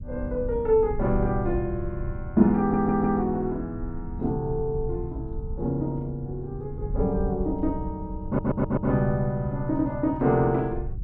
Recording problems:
rumble; below 84 Hz, SNR 10 dB
stutter; at 2.5 s and at 8.5 s

